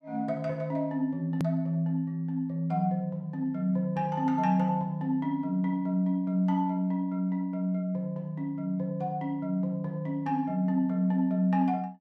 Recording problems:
hard cut with a click; at 1.5 s

